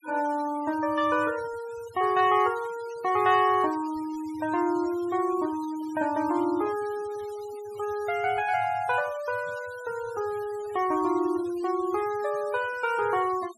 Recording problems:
denoising artefacts; signal-to-artefact ratio 20 dB

